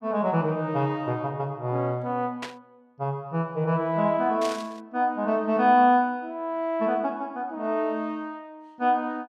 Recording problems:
static burst; at 2.5 s and at 4.5 s; peak -5 dB vs average level

